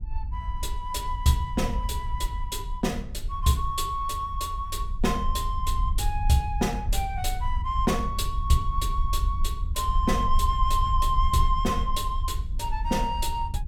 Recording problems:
low-frequency rumble; below 62 Hz, SNR 3 dB

